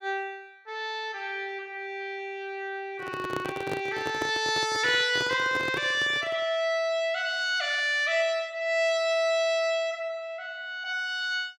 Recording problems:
microphone handling noise; from 3 to 6.5 s; peak -2 dB vs average level

